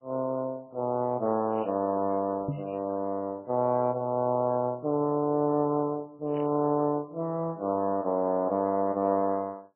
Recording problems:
lossy compression; MP2, then MP3, log-spectral distance 3 dB
crackling; from 1.5 to 3 s and at 6.5 s; loose cable, SNR 27 dB
knock on the microphone; at 2.5 s; peak 0 dB vs average level

